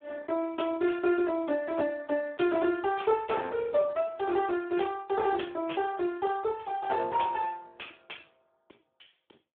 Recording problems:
telephone audio; 300 Hz to 3.5 kHz, Speex

